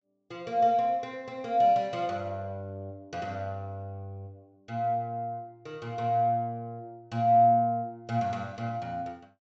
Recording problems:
treble cut off; nothing above 8 kHz

